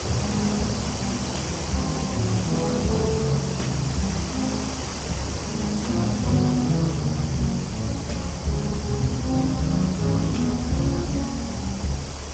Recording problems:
codec artefacts; Speex, log-spectral distance 10 dB, nothing above 16.5 kHz
electrical hum; 60 Hz, harmonics up to 540 Hz, SNR 29 dB
background hiss; SNR 6 dB
low-frequency rumble; below 90 Hz, strongest tone 72 Hz, SNR 12 dB

